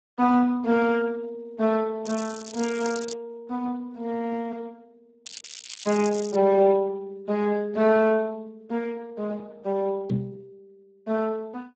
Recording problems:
codec artefacts; Speex, log-spectral distance 5 dB
crackle; from 2 to 3 s and from 5.5 to 6.5 s; loose cable, SNR 14 dB
microphone bump; at 10 s; peak +5 dB vs average level

